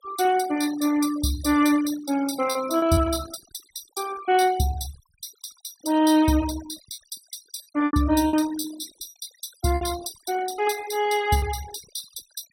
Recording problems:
noise reduction artefacts; signal-to-artefact ratio 17 dB
packet loss; 4% of the sound replaced, filled with repeated pitch periods

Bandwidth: 16 kHz